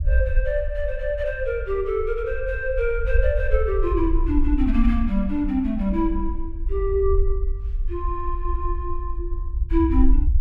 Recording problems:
low-frequency rumble; below 56 Hz, SNR 2 dB

